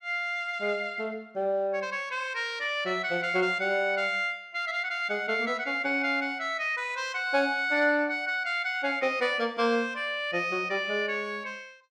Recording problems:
none

